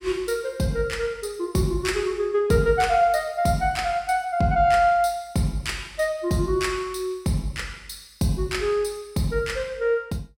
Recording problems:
none

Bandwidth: 16.5 kHz